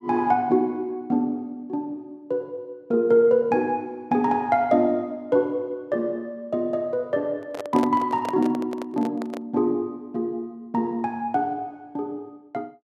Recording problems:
microphone handling noise; from 7.5 to 9.5 s; peak -2 dB vs average level

